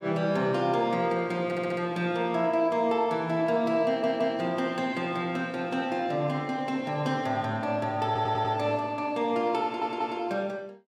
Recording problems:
stutter; 4 times, first at 1.5 s

